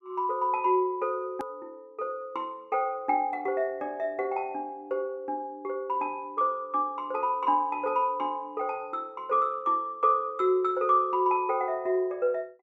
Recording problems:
edit click; at 1.5 s

